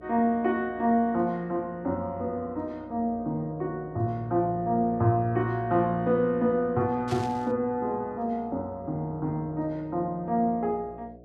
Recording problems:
mains hum; 60 Hz, harmonics up to 720 Hz, SNR 21 dB
static burst; at 7 s; peak -8 dB vs average level

